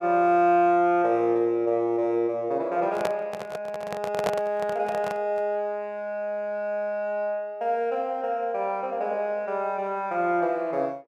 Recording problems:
microphone handling noise; from 3 to 5.5 s; peak +2 dB vs average level

